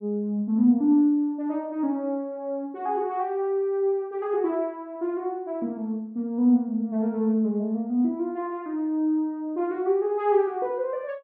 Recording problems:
none

